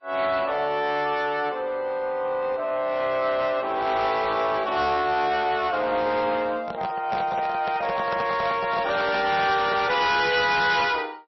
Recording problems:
lossy compression; MP3, then MP3, log-spectral distance 3 dB, nothing above 5.7 kHz
distorted audio; soft clipping, signal-to-distortion ratio 11 dB
microphone handling noise; from 6.5 to 10 s; peak -4 dB vs average level

